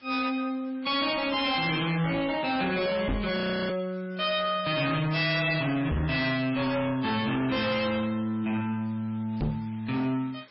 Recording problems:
lossy codec; MP3, log-spectral distance 5 dB, nothing above 5.2 kHz
distortion; soft clipping, signal-to-distortion ratio 7 dB
hiss; SNR 27 dB
knock on the microphone; at 3 s, at 6 s and at 9.5 s; peak +2 dB vs average level
audio freezing; at 3.5 s

